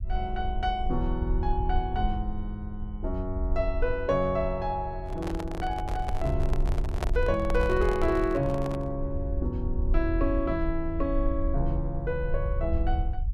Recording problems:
low-frequency rumble; below 62 Hz, SNR 3 dB
microphone handling noise; from 5 to 9 s; peak +2 dB vs average level

